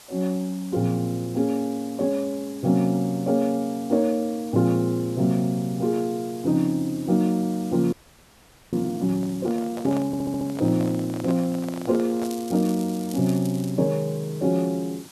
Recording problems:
background hiss; slope -1 dB per octave, SNR 21 dB
audio freezing; at 8 s for 1 s
handling noise; from 9 to 12 s; peak -7 dB vs average level
audio stuttering; at 10 s
crackling; from 12 to 14 s; loose cable, SNR 18 dB

